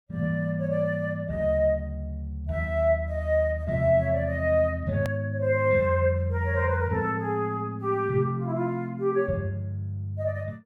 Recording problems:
hard cut with a click; at 5 s

